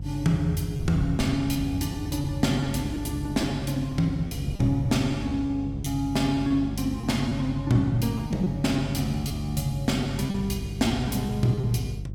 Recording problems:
electrical hum; 50 Hz, harmonics up to 400 Hz, SNR 9 dB
wind on the microphone; below 160 Hz, SNR 17 dB
lost packets; 5% of the sound replaced, filled with repeated pitch periods

